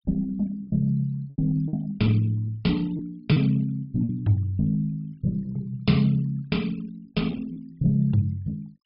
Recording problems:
low-pass filter; nothing above 5.5 kHz
noise reduction artefacts; signal-to-artefact ratio 26 dB
packet loss; 4% of the sound replaced, filled with repeated pitch periods

